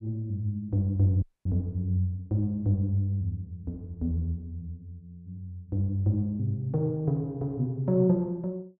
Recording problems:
dropout; at 1 s

